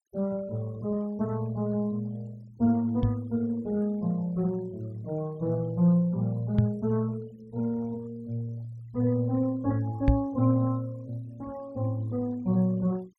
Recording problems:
noise reduction artefacts; signal-to-artefact ratio 27 dB
microphone thump; at 3 s, at 6.5 s and at 10 s; peak +9 dB vs average level

